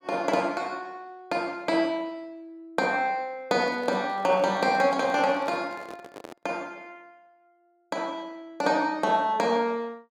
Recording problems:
microphone handling noise; from 3.5 to 6.5 s; peak -11 dB vs average level

